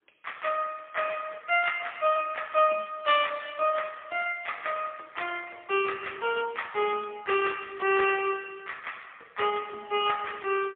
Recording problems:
telephone audio; 280 Hz to 3.4 kHz, AMR-NB, then MP3

